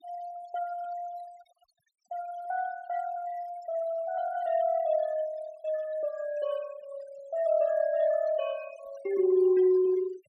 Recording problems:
noise reduction artefacts; signal-to-artefact ratio 20 dB

